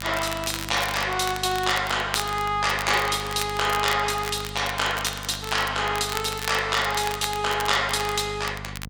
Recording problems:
electrical hum; 50 Hz, harmonics up to 550 Hz, SNR 15 dB
crackle; vinyl, SNR 11 dB

